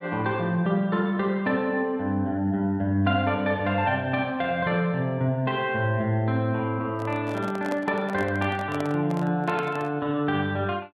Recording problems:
microphone handling noise; from 7 to 10 s; peak -4 dB vs average level

